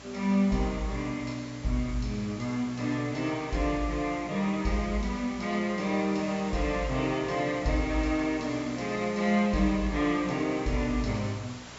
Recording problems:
treble cut off; nothing above 8 kHz
electrical hum; 60 Hz, harmonics up to 900 Hz, SNR 23 dB
hiss; slope -2 dB per octave, SNR 17 dB

